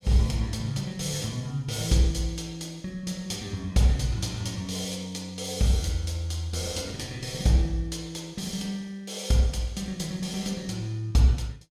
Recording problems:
none

